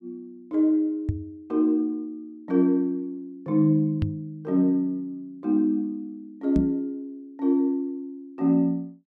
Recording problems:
microphone thump; at 1 s, at 4 s and at 6.5 s; peak +3 dB vs average level

